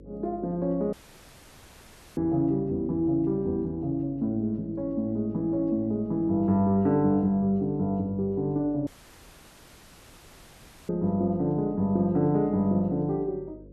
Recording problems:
hum; 50 Hz, harmonics up to 550 Hz, SNR 22 dB
dropout; at 1 s for 1 s and at 9 s for 2 s

